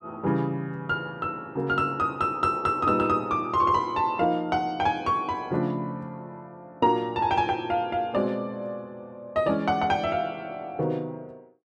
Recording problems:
none

